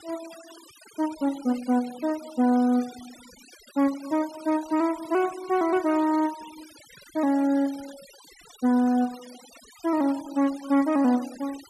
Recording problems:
noise reduction artefacts; signal-to-artefact ratio 21 dB

